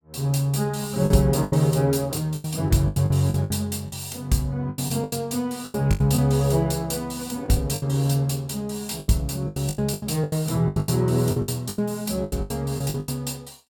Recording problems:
packet loss; 15% of the sound replaced, filled with the last packet

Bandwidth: 18 kHz